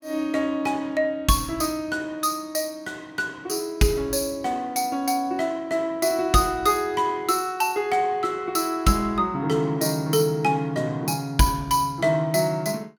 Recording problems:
none

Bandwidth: 17.5 kHz